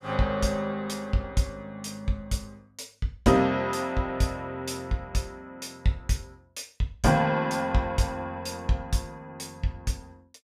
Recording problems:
none

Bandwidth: 15 kHz